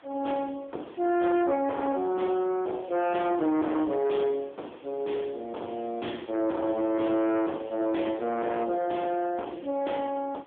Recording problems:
telephone audio; 240 Hz to 3.4 kHz, AMR-NB
distorted audio; soft clipping, signal-to-distortion ratio 8 dB
background hiss; SNR 27 dB

